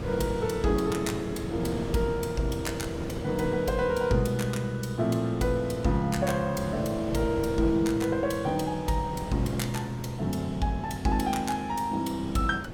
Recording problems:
wind on the microphone; below 480 Hz, SNR 10 dB

